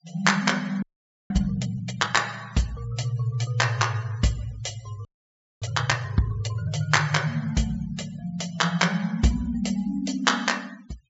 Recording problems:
low-pass filter; nothing above 7.5 kHz
noise reduction artefacts; signal-to-artefact ratio 23 dB
audio freezing; at 1 s and at 5 s for 0.5 s

